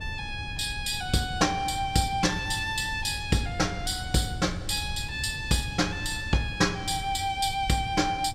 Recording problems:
low-frequency rumble; below 120 Hz, SNR 12 dB

